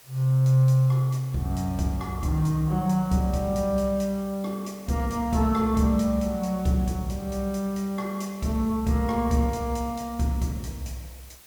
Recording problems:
background hiss; slope -1 dB per octave, SNR 23 dB

